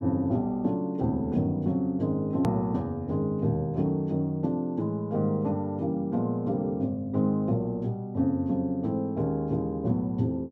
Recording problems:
click at an edit; at 2.5 s

